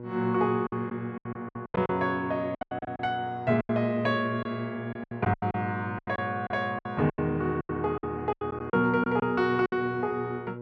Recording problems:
hum; 60 Hz, harmonics up to 1.1 kHz, SNR 12 dB
packet loss; 14% of the sound replaced, filled with silence

